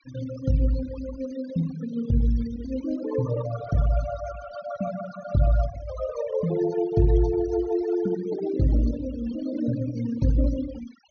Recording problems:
treble cut off; nothing above 6.5 kHz
denoising artefacts; signal-to-artefact ratio 16 dB

